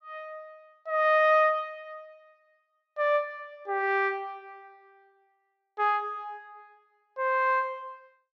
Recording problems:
none

